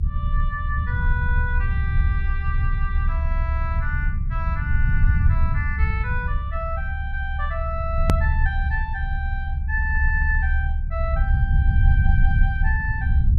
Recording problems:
rumble; below 78 Hz, SNR -6 dB
click at an edit; at 8 s

